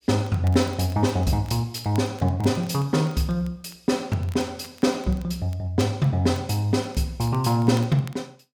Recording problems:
crackle; vinyl, SNR 25 dB

